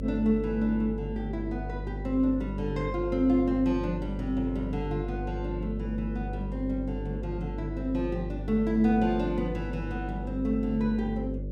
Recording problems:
hum; 50 Hz, harmonics up to 550 Hz, SNR 6 dB

